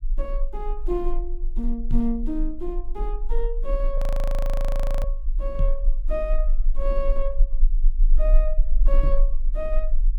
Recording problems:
low-frequency rumble; below 34 Hz, strongest tone 26 Hz, SNR -5 dB
knock on the microphone; at 2 s, at 5.5 s and at 9 s; peak +6 dB vs average level
audio freezing; at 4 s for 1 s

